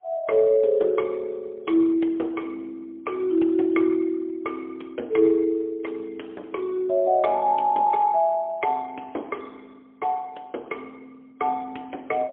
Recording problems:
phone line; 280 Hz to 3.4 kHz, AMR-NB, then MP3

